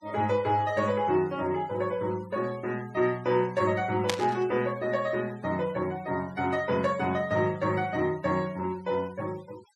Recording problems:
noise reduction artefacts; signal-to-artefact ratio 23 dB
static burst; at 4 s; peak +4 dB vs average level

